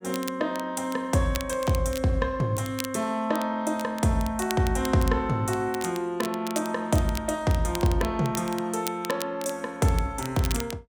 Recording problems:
crackle; vinyl, SNR 13 dB

